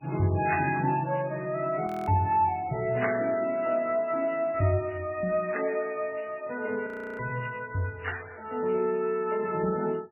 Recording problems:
lossy compression; MP3, then MP3, log-spectral distance 4 dB, nothing above 2.5 kHz
frozen audio; at 2 s and at 7 s
crackle; at 7 s; loose cable, SNR 27 dB

